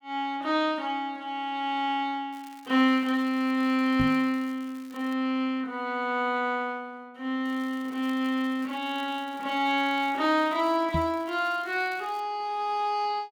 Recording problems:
crackle; from 2.5 to 5 s and from 7.5 to 12 s; loose cable, SNR 26 dB
microphone bump; at 4 s and at 11 s; peak +2 dB vs average level

